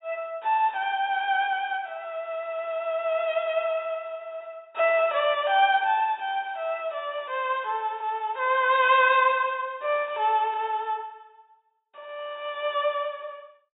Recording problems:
low-pass filter; nothing above 4 kHz

